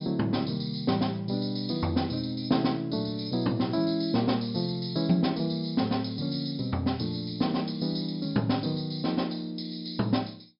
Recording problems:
treble missing; nothing above 5.5 kHz

